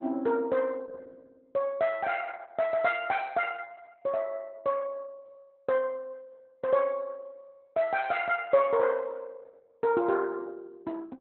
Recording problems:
lossy codec; Opus, log-spectral distance 3 dB, nothing above 4 kHz

